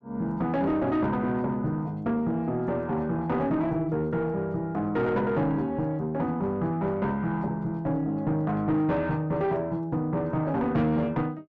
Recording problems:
distortion; soft clipping, signal-to-distortion ratio 10 dB

